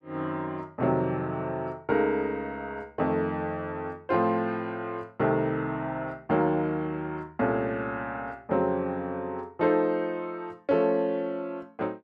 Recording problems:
none

